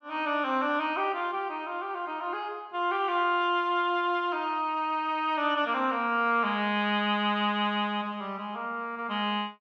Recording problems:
none

